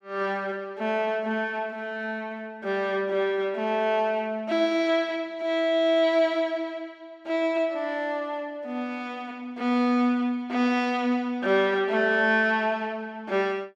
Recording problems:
none

